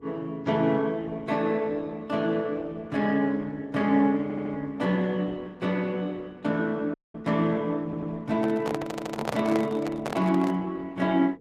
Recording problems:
codec artefacts; Opus, log-spectral distance 2 dB, nothing above 13.7 kHz
hum; 50 Hz, harmonics up to 500 Hz, SNR 26 dB
audio stuttering; at 4 s, at 8 s and at 9 s
dropout; at 7 s
handling noise; from 8.5 to 11 s; peak +2 dB vs average level

